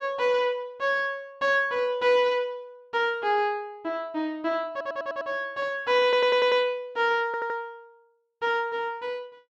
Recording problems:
audio stuttering; at 4.5 s, at 6 s and at 7.5 s

